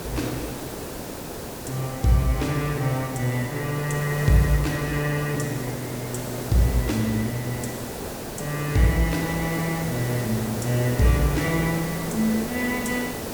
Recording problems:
background hiss; SNR 7 dB

